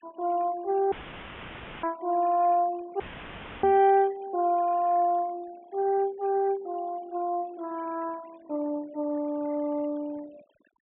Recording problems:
low-pass filter; nothing above 3.4 kHz
denoising artefacts; signal-to-artefact ratio 24 dB
audio cutting out; at 1 s for 1 s and at 3 s for 0.5 s; filled with static
microphone bump; at 3.5 s; peak -9 dB vs average level

